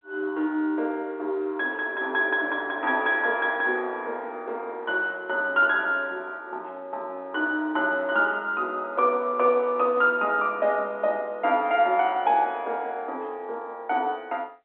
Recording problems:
phone line; 260 Hz to 3.8 kHz, G.711

